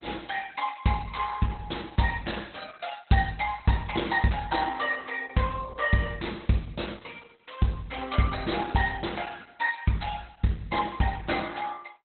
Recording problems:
lossy compression; Opus, log-spectral distance 7 dB, nothing above 4.1 kHz

